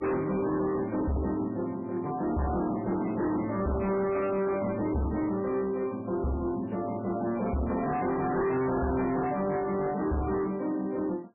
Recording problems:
lossy compression; MP3, log-spectral distance 3 dB, nothing above 2.4 kHz
distorted audio; hard clipping, signal-to-distortion ratio 8 dB

